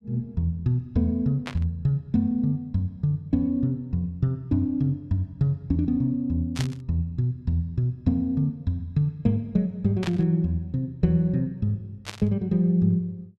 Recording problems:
burst of static; 4 times, first at 1.5 s; peak -3 dB vs average level

